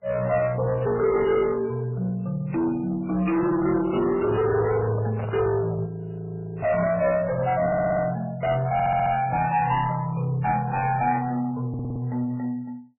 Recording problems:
lossy compression; MP3, then MP3, log-spectral distance 3 dB, nothing above 2.9 kHz
distorted audio; soft clipping, signal-to-distortion ratio 7 dB
handling noise; from 3.5 to 6 s; peak -4 dB vs average level
audio freezing; at 6 s for 1 s
audio stuttering; at 7.5 s, at 8.5 s and at 12 s

